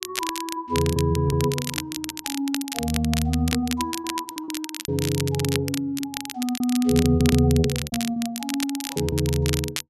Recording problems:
crackling; vinyl, SNR 7 dB
packet loss; 10% of the sound replaced, filled with repeated pitch periods

